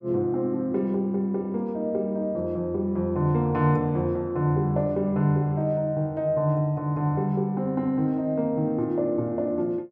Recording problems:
none

